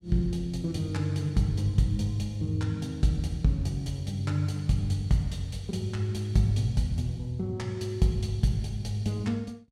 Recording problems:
none

